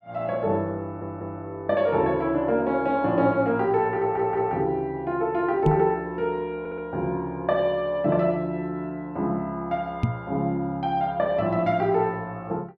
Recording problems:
audio stuttering; at 1 s, at 4 s and at 6.5 s
microphone bump; at 5.5 s and at 10 s; peak +6 dB vs average level

